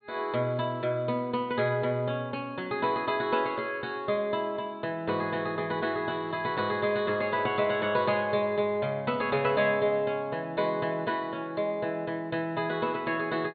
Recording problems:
treble cut off; nothing above 4.4 kHz
crackle; from 6 to 7.5 s; loose cable, SNR 29 dB

